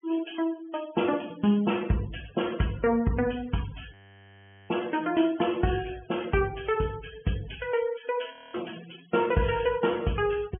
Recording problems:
treble missing; nothing above 3.2 kHz
noise reduction artefacts; signal-to-artefact ratio 18 dB
frozen audio; at 4 s for 1 s and at 8.5 s

